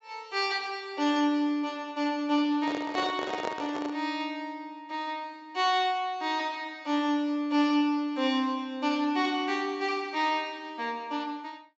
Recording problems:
treble missing; nothing above 8 kHz
microphone handling noise; from 2.5 to 4 s; peak -1 dB vs average level

